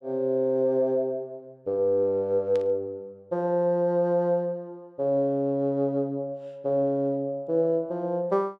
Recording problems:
burst of static; at 2.5 s; peak -15 dB vs average level

